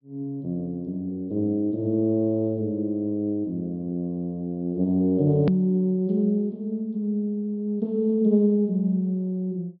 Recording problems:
treble missing; nothing above 5.5 kHz
edit click; at 5.5 s

